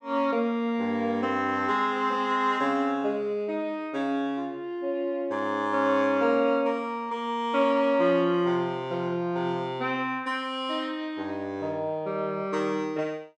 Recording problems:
none

